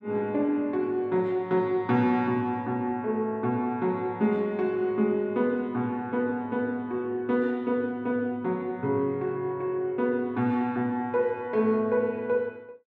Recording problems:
none

